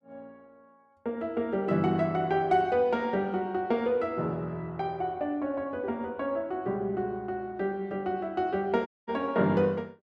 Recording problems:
dropout; at 9 s

